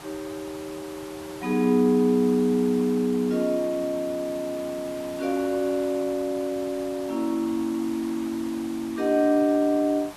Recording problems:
background hiss; SNR 17 dB

